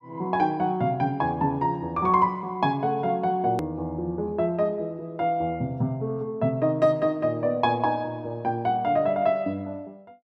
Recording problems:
hard cut with a click; at 3.5 s

